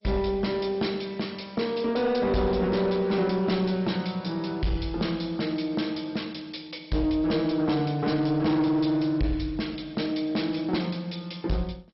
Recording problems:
codec artefacts; MP2, log-spectral distance 6 dB, nothing above 5.5 kHz
distorted audio; soft clipping, signal-to-distortion ratio 11 dB

